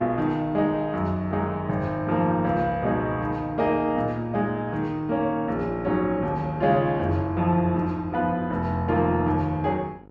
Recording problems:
hum; 50 Hz, harmonics up to 1.4 kHz, SNR 24 dB

